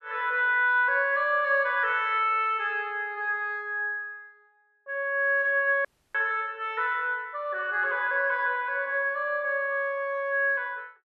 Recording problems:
dropout; at 6 s

